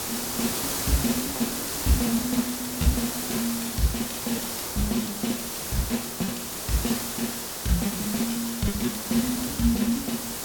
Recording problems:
background hiss; SNR 1 dB
lost packets; 15% of the sound replaced, filled with repeated pitch periods

